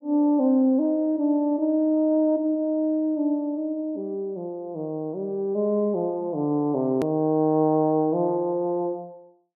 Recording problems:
hard cut with a click; at 7 s

